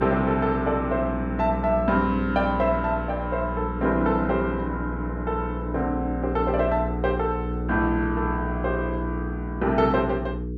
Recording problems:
hum; 60 Hz, harmonics up to 480 Hz, SNR 5 dB

